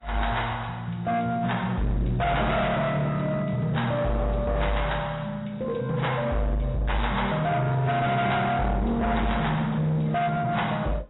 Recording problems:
lossy compression; AAC, log-spectral distance 4 dB, nothing above 3.9 kHz
distortion; hard clipping, signal-to-distortion ratio 7 dB

